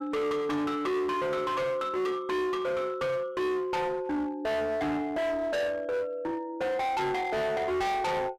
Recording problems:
distorted audio; hard clipping, uneven, signal-to-distortion ratio 6 dB

